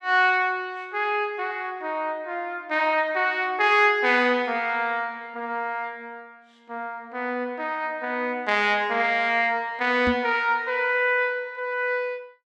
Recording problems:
knock on the microphone; at 10 s; peak -1 dB vs average level

